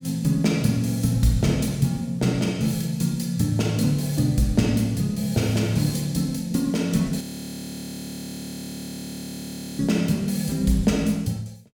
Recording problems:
frozen audio; at 7 s for 2.5 s

